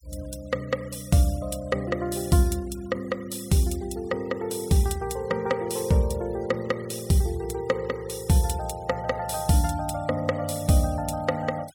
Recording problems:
noise reduction artefacts; signal-to-artefact ratio 22 dB

